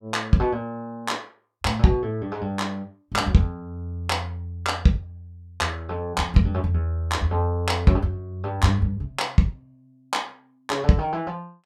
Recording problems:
none

